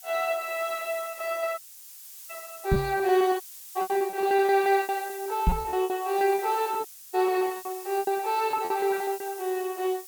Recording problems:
hiss; slope +5 dB per octave, SNR 15 dB
packet loss; 15% of the sound replaced, filled with repeated pitch periods
audio cutting out; at 1.5 s for 0.5 s, at 3.5 s and at 7 s
microphone thump; at 2.5 s and at 5.5 s; peak +6 dB vs average level

